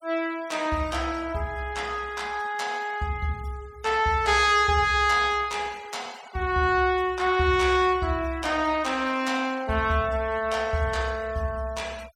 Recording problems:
noise reduction artefacts; signal-to-artefact ratio 23 dB

